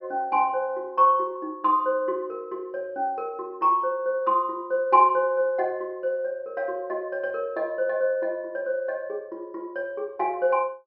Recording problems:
low-pass filter; nothing above 5.5 kHz

